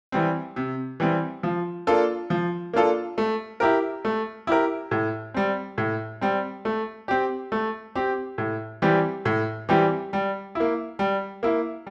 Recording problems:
none

